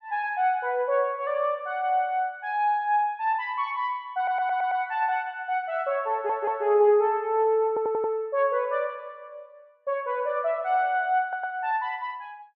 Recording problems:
audio stuttering; 4 times, first at 4 s

